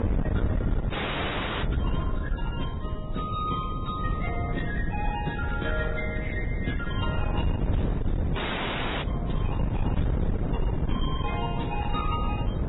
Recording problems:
lossy compression; AAC, then Vorbis, log-spectral distance 4 dB, nothing above 3.2 kHz
distorted audio; hard clipping, uneven, signal-to-distortion ratio 7 dB
wind on the microphone; below 180 Hz, SNR -4 dB
frozen audio; at 1 s for 0.5 s and at 8.5 s for 0.5 s

